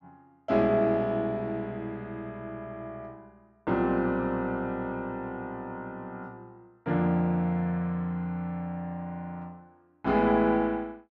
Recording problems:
none

